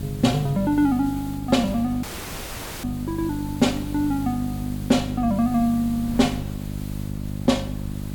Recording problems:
hum; 50 Hz, harmonics up to 600 Hz, SNR 8 dB
background hiss; slope -1 dB per octave, SNR 20 dB
wind on the microphone; below 120 Hz, SNR 19 dB
dropout; at 2 s for 1 s

